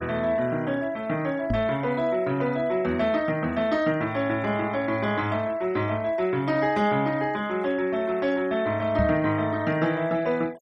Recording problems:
denoising artefacts; signal-to-artefact ratio 23 dB
microphone thump; at 1.5 s and at 9 s; peak +2 dB vs average level

